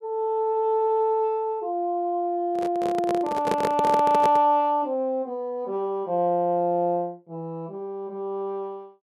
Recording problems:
microphone handling noise; from 2.5 to 4.5 s; peak +2 dB vs average level

